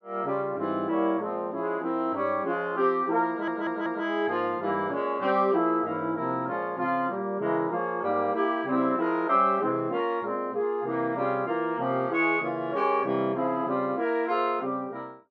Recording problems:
stutter; at 3.5 s

